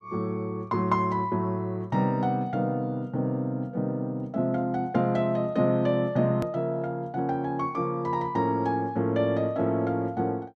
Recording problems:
hard cut with a click; at 6.5 s

